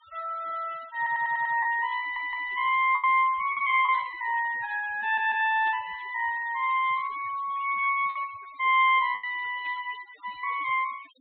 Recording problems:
low-pass filter; nothing above 4 kHz
noise reduction artefacts; signal-to-artefact ratio 23 dB
lost packets; 3% of the sound replaced, filled with the last packet
audio stuttering; at 1 s, at 2 s and at 5 s
burst of static; 4 times, first at 4 s; peak -19 dB vs average level

